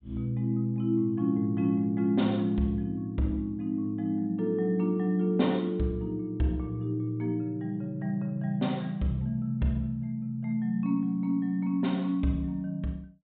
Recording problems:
low-pass filter; nothing above 4 kHz

